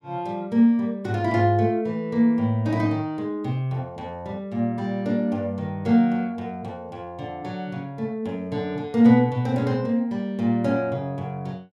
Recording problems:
none

